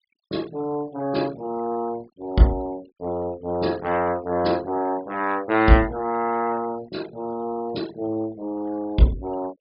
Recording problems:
treble cut off; nothing above 5.5 kHz
denoising artefacts; signal-to-artefact ratio 21 dB

